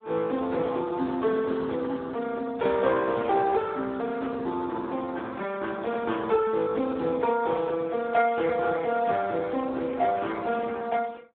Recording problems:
telephone audio; 220 Hz to 2.1 kHz, Speex

